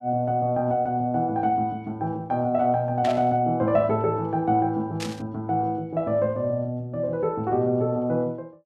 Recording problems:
burst of static; at 3 s and at 5 s; peak -4 dB vs average level

